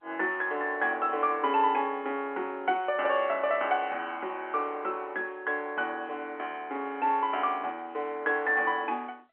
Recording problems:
phone line; 260 Hz to 3.3 kHz, G.711

